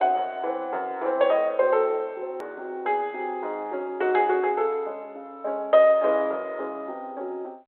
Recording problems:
telephone audio; 340 Hz to 3.8 kHz, G.726
click at an edit; at 2.5 s

